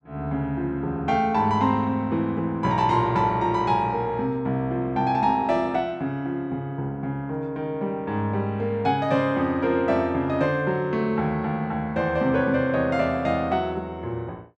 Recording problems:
none

